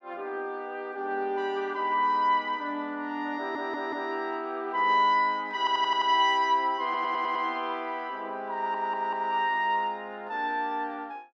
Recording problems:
stutter; 4 times, first at 3.5 s

